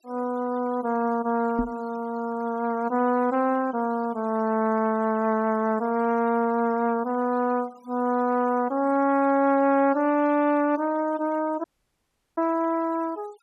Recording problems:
noise reduction artefacts; signal-to-artefact ratio 25 dB
knock on the microphone; at 1.5 s; peak +1 dB vs average level
audio cutting out; at 12 s for 0.5 s

